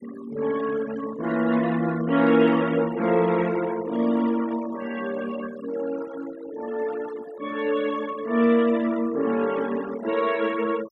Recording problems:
denoising artefacts; signal-to-artefact ratio 16 dB

